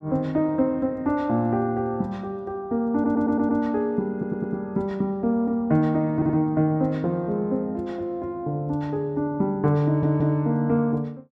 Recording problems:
stutter; 4 times, first at 3 s

